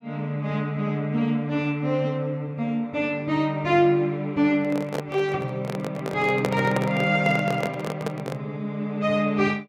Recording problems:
microphone handling noise; from 4.5 to 8.5 s; peak +3 dB vs average level

